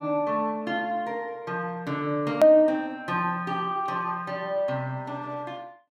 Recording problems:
edit click; at 2.5 s

